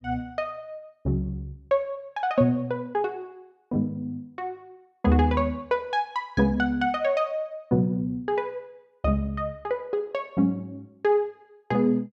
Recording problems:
none

